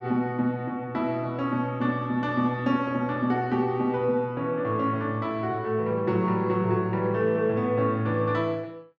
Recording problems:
none

